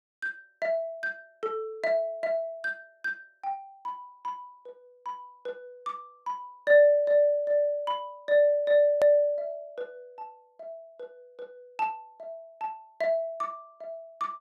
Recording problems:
click at an edit; at 9 s

